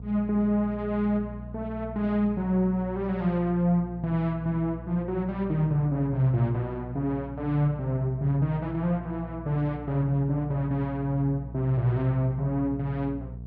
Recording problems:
hum; 60 Hz, harmonics up to 480 Hz, SNR 13 dB

